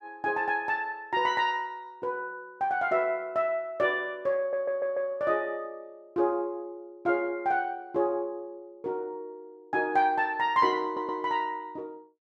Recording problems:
audio stuttering; at 4.5 s and at 11 s

